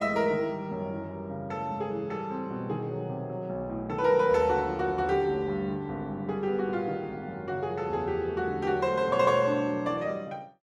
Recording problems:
none

